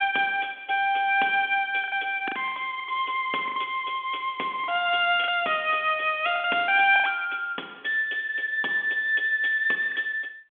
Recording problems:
phone line; 240 Hz to 3.5 kHz, G.726
packet loss; 7% of the sound replaced, filled with the last packet

